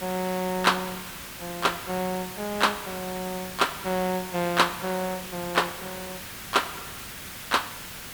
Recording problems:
background hiss; slope -1 dB per octave, SNR 9 dB

